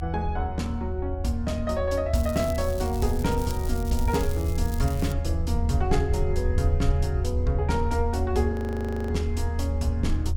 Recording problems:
rumble; below 78 Hz, strongest tone 78 Hz, SNR 0 dB
crackle; from 2 to 5 s; loose cable, SNR 14 dB
frozen audio; at 8.5 s for 0.5 s

